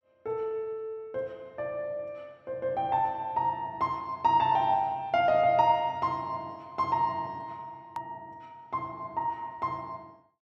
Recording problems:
edit click; at 8 s

